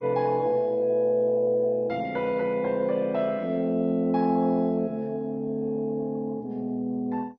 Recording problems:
lossy codec; MP2, log-spectral distance 2 dB, nothing above 5.2 kHz

